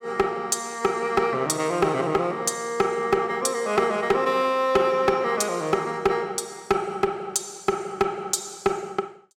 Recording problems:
distortion; hard clipping, signal-to-distortion ratio 11 dB

